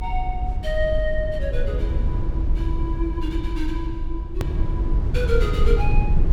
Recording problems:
rumble; below 72 Hz, SNR -4 dB
click at an edit; at 4.5 s

